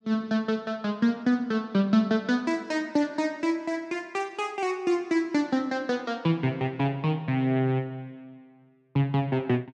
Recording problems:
none

